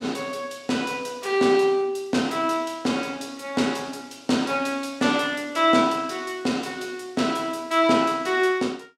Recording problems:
none

